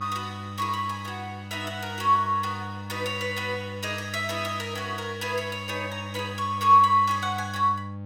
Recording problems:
hum; 50 Hz, harmonics up to 1.1 kHz, SNR 12 dB

